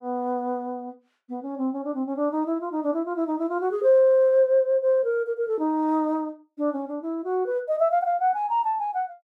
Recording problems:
none

